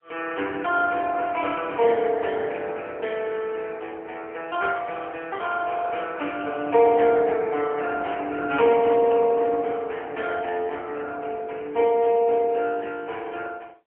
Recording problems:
telephone audio; 300 Hz to 3.3 kHz, AMR-NB, then MP3

